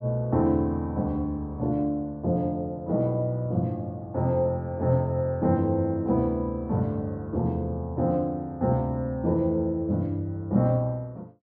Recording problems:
none

